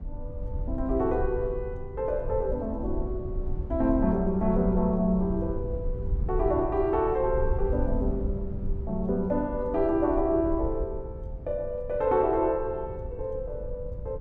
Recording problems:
rumble; below 80 Hz, SNR 7 dB

